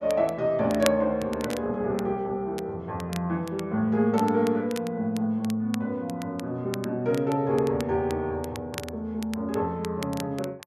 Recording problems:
crackling; vinyl, SNR 15 dB

